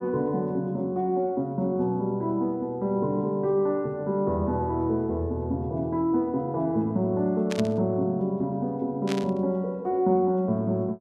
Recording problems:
static burst; at 7.5 s and at 9 s; peak -4 dB vs average level

